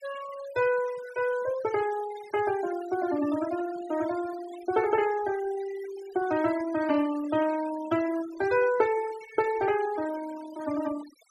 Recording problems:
noise reduction artefacts; signal-to-artefact ratio 15 dB

